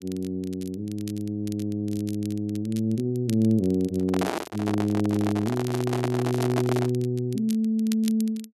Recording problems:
crackling; vinyl, SNR 19 dB
handling noise; from 4 to 7 s; peak +3 dB vs average level

